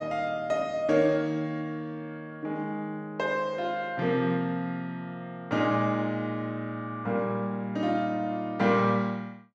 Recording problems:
none

